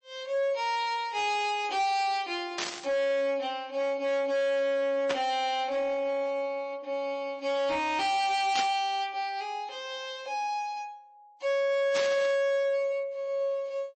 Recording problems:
lossy compression; MP3, log-spectral distance 2 dB, nothing above 8.2 kHz
distorted audio; hard clipping, signal-to-distortion ratio 12 dB
static burst; 4 times, first at 2.5 s; peak +1 dB vs average level

